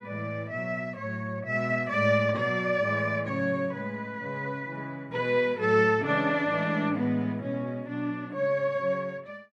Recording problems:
none

